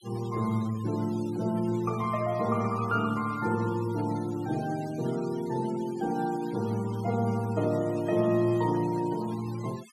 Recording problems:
denoising artefacts; signal-to-artefact ratio 19 dB

